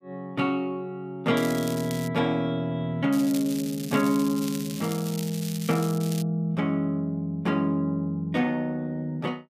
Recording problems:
crackle; at 1.5 s and from 3 to 6 s; loose cable, SNR 12 dB

